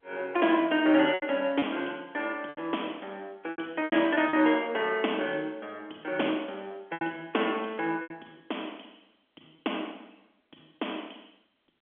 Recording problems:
phone line; 260 Hz to 3.4 kHz, G.711
packet loss; 6% of the sound replaced, filled with repeated pitch periods

